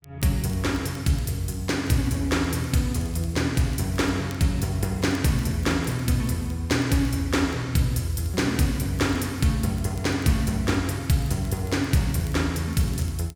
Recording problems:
crackle; vinyl, SNR 28 dB

